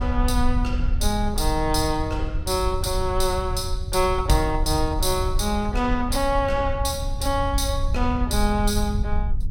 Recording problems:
rumble; below 72 Hz, SNR 4 dB

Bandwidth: 16.5 kHz